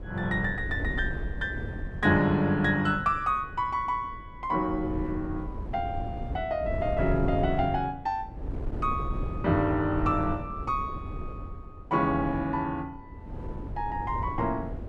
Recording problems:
wind on the microphone; below 180 Hz, SNR 8 dB

